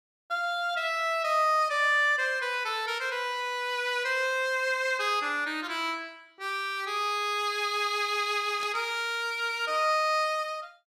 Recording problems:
static burst; at 8.5 s; peak -11 dB vs average level

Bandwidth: 14.5 kHz